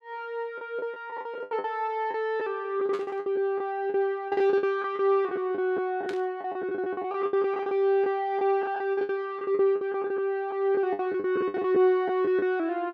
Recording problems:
packet loss; 16% of the sound replaced, filled with the last packet
burst of static; at 3 s and at 6 s; peak -9 dB vs average level

